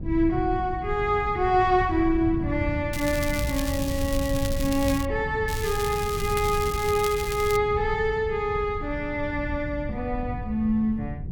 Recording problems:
wind noise; below 120 Hz, SNR 8 dB
crackle; from 3 to 5 s and from 5.5 to 7.5 s; loose cable, SNR 10 dB

